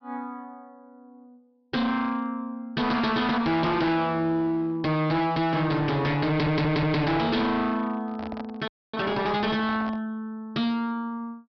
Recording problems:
treble missing; nothing above 5.5 kHz
distorted audio; hard clipping, uneven, signal-to-distortion ratio 6 dB
stutter; at 6.5 s
handling noise; from 8 to 10 s; peak -7 dB vs average level
audio freezing; at 8.5 s

